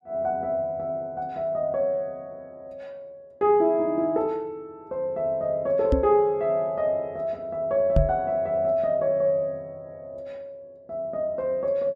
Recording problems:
knock on the microphone; at 6 s and at 8 s; peak +6 dB vs average level

